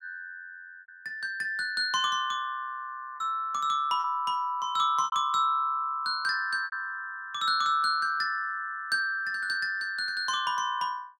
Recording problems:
packet loss; 3% of the sound replaced, filled with repeated pitch periods

